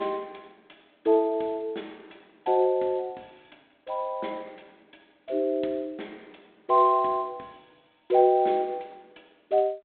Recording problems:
telephone audio; 240 Hz to 3.7 kHz, G.726

